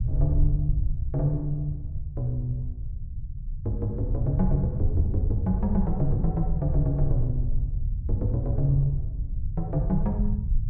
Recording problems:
rumble; below 80 Hz, SNR 2 dB

